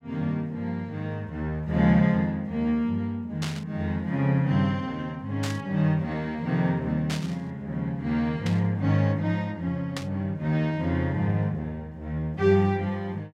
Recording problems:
burst of static; 5 times, first at 3.5 s; peak -3 dB vs average level

